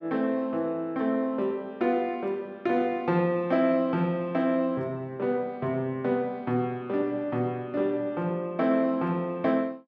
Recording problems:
none

